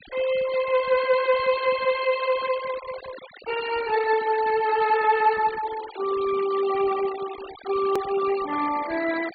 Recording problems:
treble cut off; nothing above 4.6 kHz
noise reduction artefacts; signal-to-artefact ratio 14 dB
hard cut with a click; at 8 s

